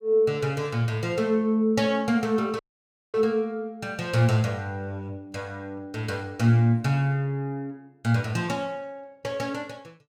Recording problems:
dropout; at 2.5 s for 0.5 s

